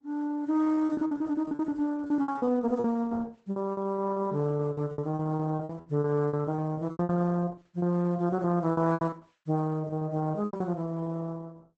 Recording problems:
lossy codec; Opus, log-spectral distance 2 dB, nothing above 8 kHz
lost packets; 18% of the sound replaced, filled with repeated pitch periods

